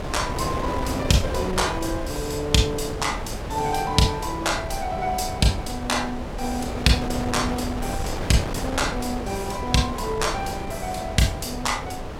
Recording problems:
wind noise; below 640 Hz, SNR 6 dB

